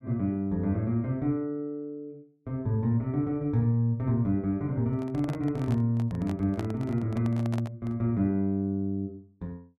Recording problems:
handling noise; from 5 to 8 s; peak -5 dB vs average level

